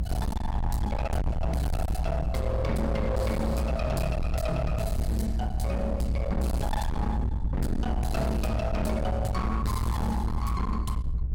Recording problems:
distorted audio; hard clipping, signal-to-distortion ratio 6 dB
rumble; below 110 Hz, SNR 0 dB

